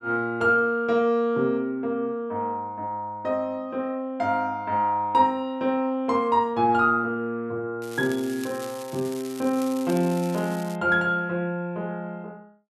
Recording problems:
crackle; from 8 to 11 s; loose cable, SNR 17 dB

